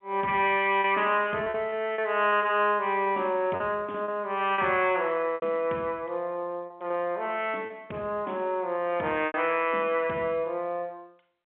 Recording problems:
phone line; 240 Hz to 3.4 kHz, G.711
packet loss; 6% of the sound replaced, filled with repeated pitch periods

